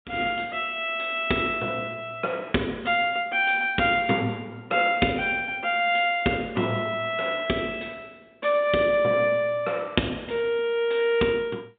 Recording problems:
phone line; 170 Hz to 3.7 kHz, G.711

